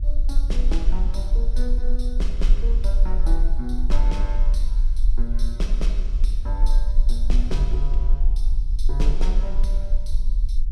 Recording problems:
low-frequency rumble; below 38 Hz, strongest tone 20 Hz, SNR -10 dB

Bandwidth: 15.5 kHz